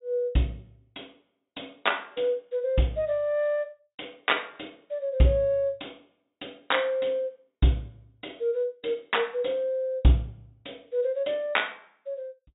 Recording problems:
treble missing; nothing above 4 kHz

